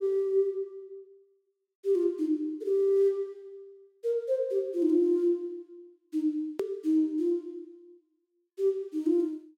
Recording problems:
click at an edit; at 6.5 s

